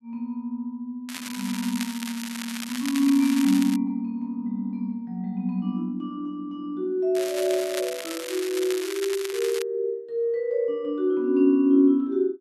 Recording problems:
crackling; from 1 to 4 s and from 7 to 9.5 s; loose cable, SNR 10 dB

